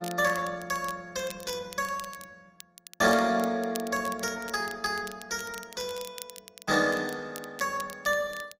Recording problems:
lossy codec; Opus, log-spectral distance 3 dB, nothing above 15.5 kHz
crackling; vinyl, SNR 16 dB

